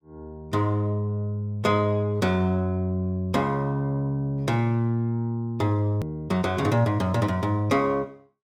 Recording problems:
hard cut with a click; at 6 s

